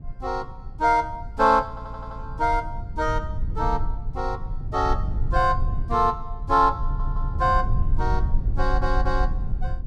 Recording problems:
low-frequency rumble; below 70 Hz, SNR 5 dB
stutter; at 1.5 s, at 7 s and at 8.5 s

